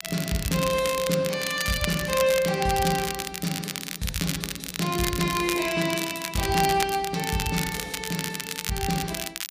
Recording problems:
crackle; vinyl, SNR 5 dB

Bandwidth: 15 kHz